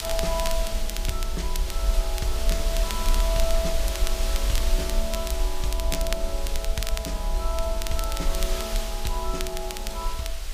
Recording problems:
hiss; slope 0 dB per octave, SNR 2 dB
low-frequency rumble; below 46 Hz, SNR -2 dB
crackle; vinyl, SNR 5 dB

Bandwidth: 15 kHz